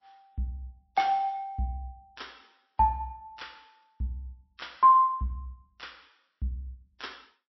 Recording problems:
lossy codec; MP3, log-spectral distance 3 dB, nothing above 5.7 kHz

